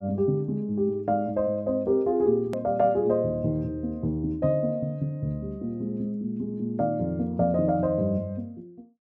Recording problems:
edit click; at 2.5 s

